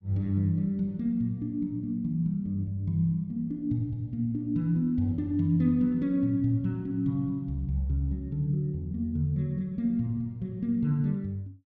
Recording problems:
none

